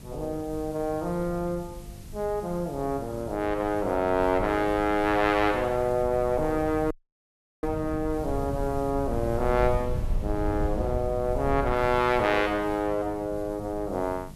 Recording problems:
hum; 50 Hz, harmonics up to 450 Hz, SNR 19 dB
hiss; slope +1 dB per octave, SNR 26 dB
wind on the microphone; below 110 Hz, SNR 11 dB
dropout; at 7 s for 0.5 s

